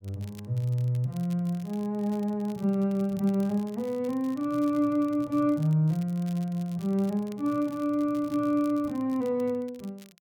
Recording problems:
crackle; vinyl, SNR 26 dB

